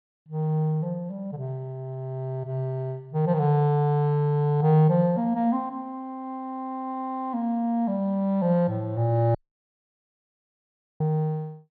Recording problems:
low-pass filter; nothing above 4.4 kHz
audio cutting out; at 9.5 s for 1.5 s

